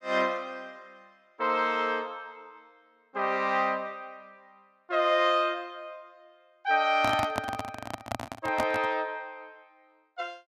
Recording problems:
handling noise; from 7 to 9 s; peak +2 dB vs average level

